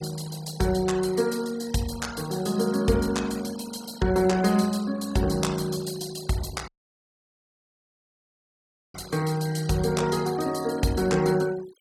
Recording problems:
denoising artefacts; signal-to-artefact ratio 17 dB
audio cutting out; at 6.5 s for 2.5 s

